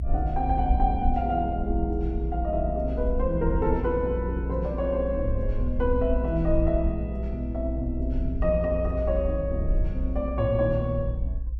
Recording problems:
low-frequency rumble; below 60 Hz, strongest tone 58 Hz, SNR 3 dB

